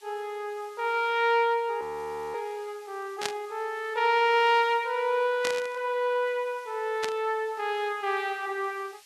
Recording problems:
background hiss; slope +4 dB per octave, SNR 27 dB
frozen audio; at 2 s for 0.5 s
burst of static; at 3 s, at 5.5 s and at 7 s; peak +1 dB vs average level

